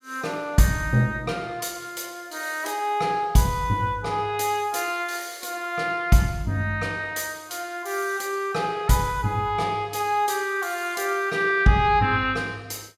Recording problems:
none

